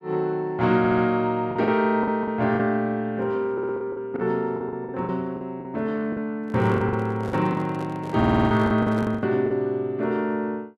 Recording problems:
packet loss; 10% of the sound replaced, filled with the last packet
stutter; at 1 s, at 3.5 s and at 8 s
handling noise; from 6.5 to 9 s; peak -6 dB vs average level

